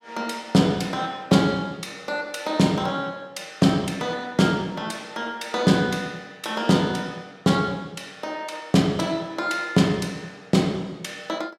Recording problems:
none

